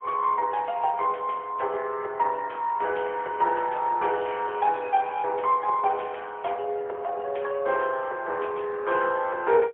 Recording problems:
phone line; 340 Hz to 3.3 kHz, AMR-NB, then MP3

